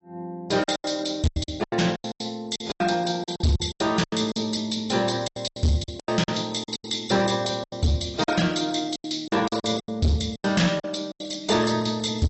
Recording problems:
lossy codec; AAC, log-spectral distance 8 dB, nothing above 7.8 kHz
distorted audio; hard clipping, signal-to-distortion ratio 8 dB
packet loss; 16% of the sound replaced, filled with silence

